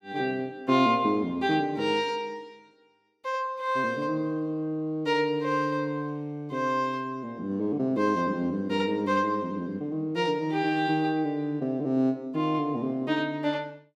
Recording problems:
none

